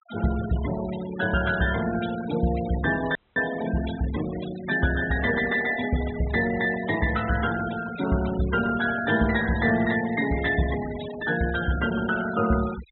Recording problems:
low-pass filter; nothing above 4 kHz
denoising artefacts; signal-to-artefact ratio 14 dB
audio cutting out; at 3 s

